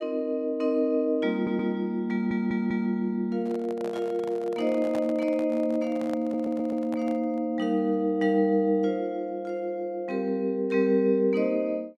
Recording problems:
audio stuttering; at 1.5 s, at 2 s and at 6 s
microphone handling noise; from 3.5 to 7.5 s; peak -7 dB vs average level

